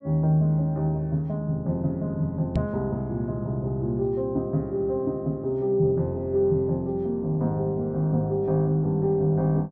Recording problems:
knock on the microphone; at 2.5 s; peak +4 dB vs average level

